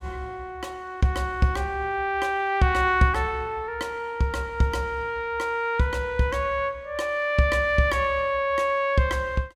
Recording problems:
none

